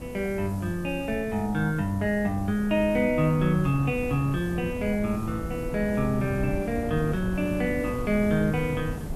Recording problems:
background hiss; slope +5 dB per octave, SNR 25 dB
wind on the microphone; below 240 Hz, SNR 10 dB

